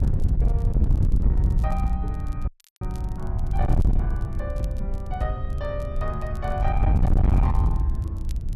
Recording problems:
distortion; soft clipping, signal-to-distortion ratio 6 dB
hum; 50 Hz, harmonics up to 600 Hz, SNR 20 dB
wind on the microphone; below 94 Hz, SNR -8 dB
crackle; vinyl, SNR 23 dB
dropout; at 2.5 s

